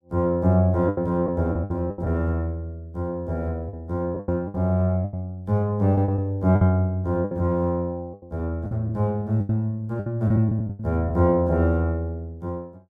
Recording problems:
packet loss; 9% of the sound replaced, filled with the last packet

